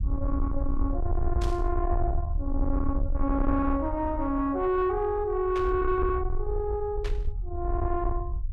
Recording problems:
distorted audio; soft clipping, signal-to-distortion ratio 11 dB
rumble; below 70 Hz, SNR 3 dB
static burst; at 1.5 s, at 5.5 s and at 7 s; peak -8 dB vs average level

